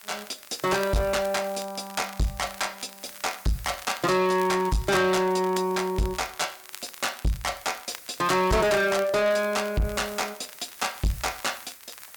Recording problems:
distorted audio; soft clipping, signal-to-distortion ratio 8 dB
hiss; SNR 19 dB
crackling; vinyl, SNR 19 dB

